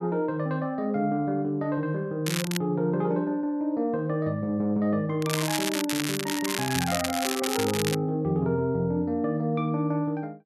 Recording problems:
crackling; at 2.5 s and from 5 to 8 s; loose cable, SNR 4 dB

